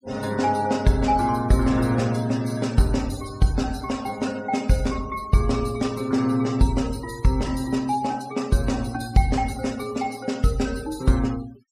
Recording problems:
denoising artefacts; signal-to-artefact ratio 18 dB

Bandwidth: 15.5 kHz